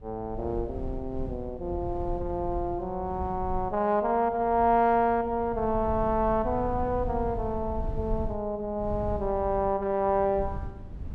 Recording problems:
wind noise; below 100 Hz, SNR 11 dB

